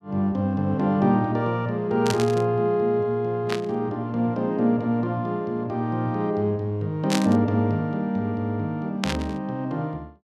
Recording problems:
static burst; 4 times, first at 2 s; peak +1 dB vs average level

